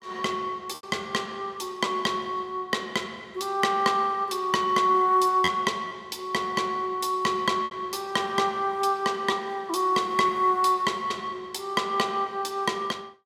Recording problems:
packet loss; 2% of the sound replaced, filled with repeated pitch periods

